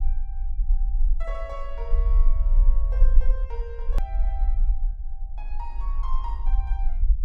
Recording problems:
rumble; below 40 Hz, strongest tone 24 Hz, SNR -14 dB
edit click; at 4 s

